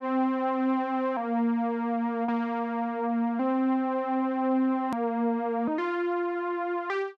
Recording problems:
hard cut with a click; at 5 s

